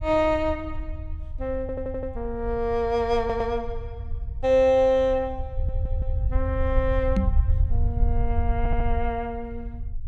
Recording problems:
rumble; below 76 Hz, SNR 5 dB
audio stuttering; 4 times, first at 1.5 s
microphone thump; at 7 s; peak +5 dB vs average level

